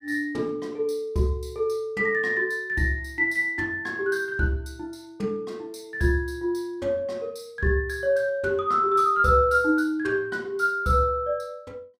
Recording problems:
none

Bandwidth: 15.5 kHz